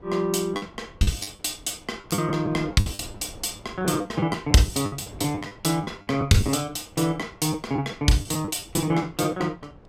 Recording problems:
wind noise; below 500 Hz, SNR 22 dB
packet loss; 13% of the sound replaced, filled with the last packet

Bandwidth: 16 kHz